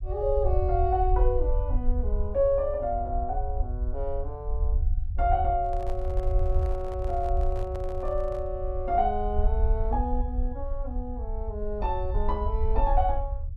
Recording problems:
rumble; below 62 Hz, SNR 1 dB
handling noise; from 5.5 to 8.5 s; peak -10 dB vs average level

